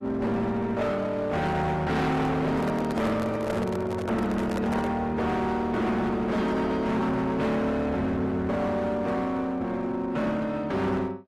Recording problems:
lossy codec; AAC, log-spectral distance 2 dB, nothing above 13.1 kHz
distorted audio; hard clipping, uneven, signal-to-distortion ratio 7 dB
microphone handling noise; from 2.5 to 5 s; peak 0 dB vs average level

